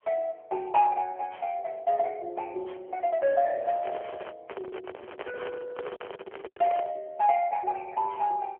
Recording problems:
telephone audio; 340 Hz to 3.3 kHz, AMR-NB
lost packets; 1.4% of the sound replaced, filled with silence
microphone handling noise; from 3.5 to 7 s; peak -5 dB vs average level

